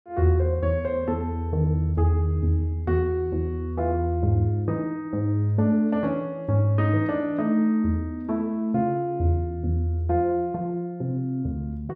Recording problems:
none

